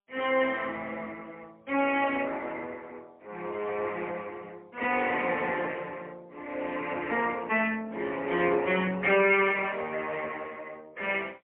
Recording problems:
telephone audio; 300 Hz to 3.2 kHz, AMR-NB, then MP3

